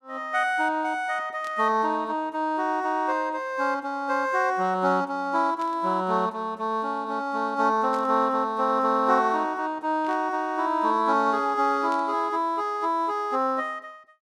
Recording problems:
burst of static; 5 times, first at 1.5 s; peak -14 dB vs average level

